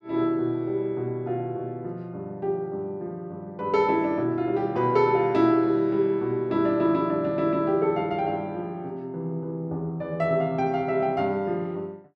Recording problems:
none

